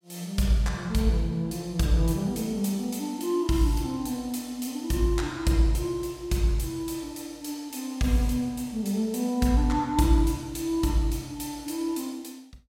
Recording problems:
none

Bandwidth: 16 kHz